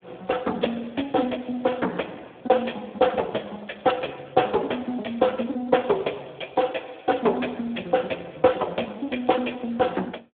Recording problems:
phone line; 240 Hz to 3.5 kHz, Speex

